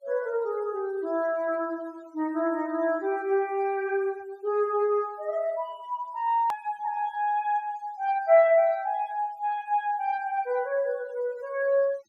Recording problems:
noise reduction artefacts; signal-to-artefact ratio 27 dB
hard cut with a click; at 6.5 s

